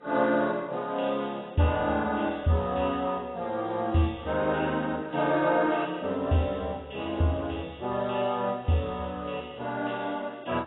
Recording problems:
lossy compression; MP2, then AAC, log-spectral distance 6 dB, nothing above 3.8 kHz

